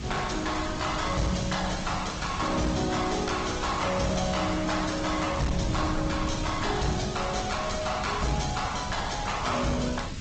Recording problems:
lossy codec; Opus, then G.722, log-spectral distance 10 dB, nothing above 7.6 kHz
distortion; hard clipping, uneven, signal-to-distortion ratio 11 dB
hum; 50 Hz, harmonics up to 600 Hz, SNR 18 dB
background hiss; slope +1 dB per octave, SNR 13 dB
wind on the microphone; below 170 Hz, SNR 9 dB

